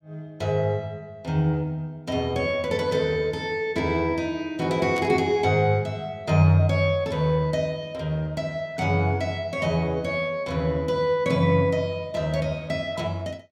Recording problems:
burst of static; at 5 s; peak -9 dB vs average level

